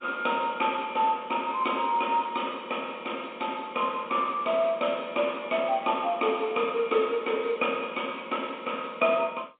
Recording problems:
telephone audio; 190 Hz to 3.6 kHz, G.711

